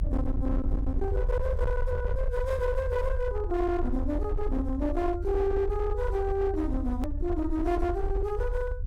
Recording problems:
distorted audio; hard clipping, uneven, signal-to-distortion ratio 10 dB
low-frequency rumble; below 74 Hz, SNR 3 dB
click at an edit; at 7 s

